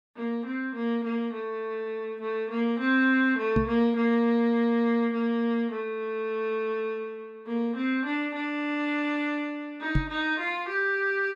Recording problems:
knock on the microphone; at 3.5 s and at 10 s; peak +5 dB vs average level

